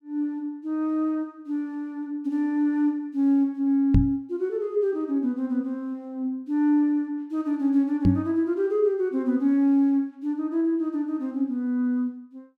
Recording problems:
knock on the microphone; at 4 s and at 8 s; peak +8 dB vs average level

